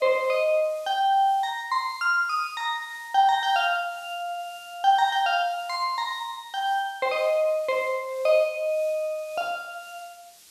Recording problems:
hiss; slope +2 dB per octave, SNR 25 dB

